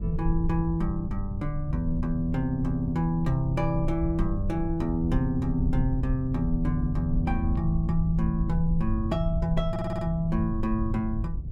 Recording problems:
low-frequency rumble; below 88 Hz, SNR 4 dB
stutter; at 9.5 s

